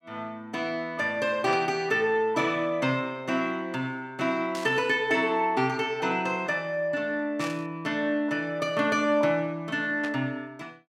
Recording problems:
burst of static; 4 times, first at 1.5 s; peak -7 dB vs average level

